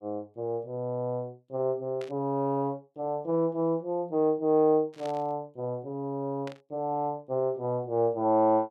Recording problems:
burst of static; at 2 s, at 5 s and at 6.5 s; peak -11 dB vs average level

